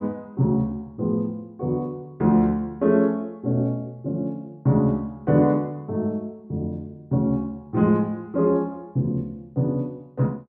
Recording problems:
none

